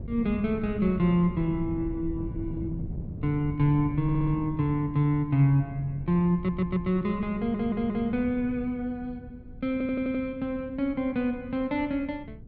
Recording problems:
wind on the microphone; below 160 Hz, SNR 12 dB
stutter; 4 times, first at 4 s

